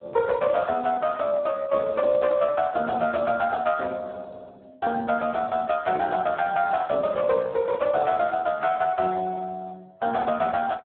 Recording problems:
phone line; 280 Hz to 2.9 kHz, Speex

